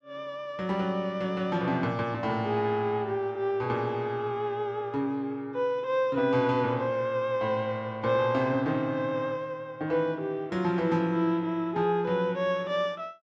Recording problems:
none

